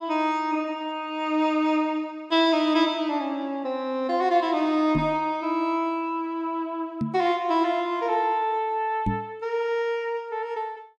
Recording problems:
microphone bump; at 5 s, at 7 s and at 9 s; peak +2 dB vs average level

